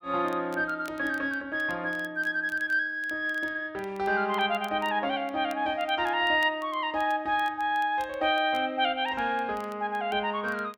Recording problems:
crackling; vinyl, SNR 27 dB

